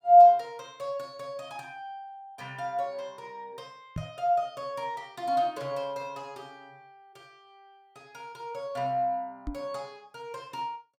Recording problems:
knock on the microphone; at 4 s and at 9.5 s; peak -3 dB vs average level

